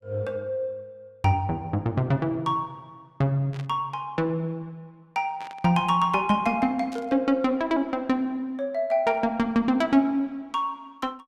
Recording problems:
burst of static; 4 times, first at 3.5 s; peak -14 dB vs average level

